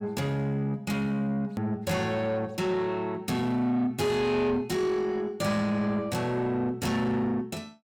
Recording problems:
distortion; soft clipping, signal-to-distortion ratio 11 dB
edit click; at 1.5 s

